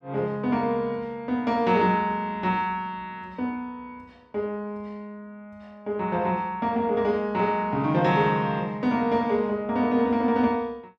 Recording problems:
none

